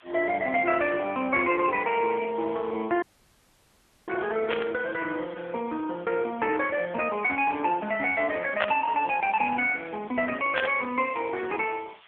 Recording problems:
phone line; 280 Hz to 3.3 kHz, AMR-NB
background hiss; SNR 27 dB
dropout; at 3 s for 1 s
static burst; at 4.5 s, at 8.5 s and at 11 s; peak +5 dB vs average level

